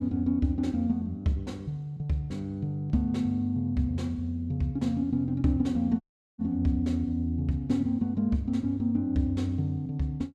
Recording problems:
dropout; at 6 s

